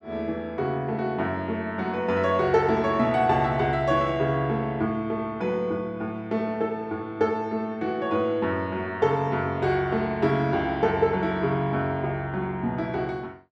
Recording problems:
none

